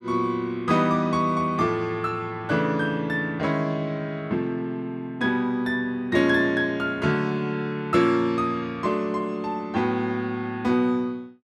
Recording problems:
none

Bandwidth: 12.5 kHz